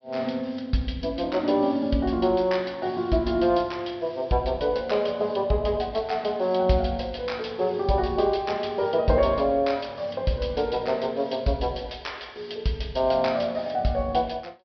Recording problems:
treble cut off; nothing above 5.5 kHz

